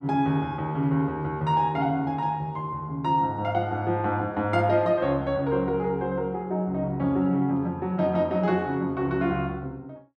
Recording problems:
none

